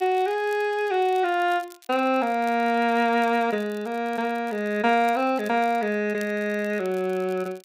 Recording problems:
crackle; vinyl, SNR 27 dB

